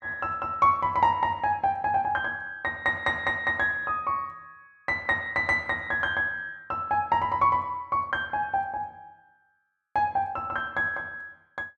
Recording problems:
none

